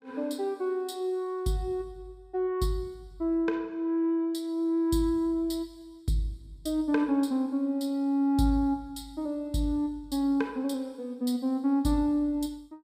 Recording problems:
none

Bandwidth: 15.5 kHz